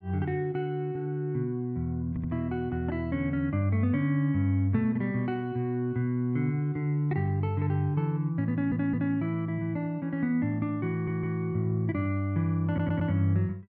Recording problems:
stutter; 4 times, first at 2 s

